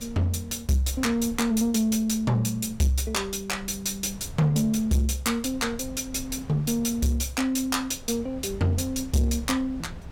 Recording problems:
distortion; soft clipping, signal-to-distortion ratio 10 dB
wind on the microphone; below 150 Hz, SNR 18 dB

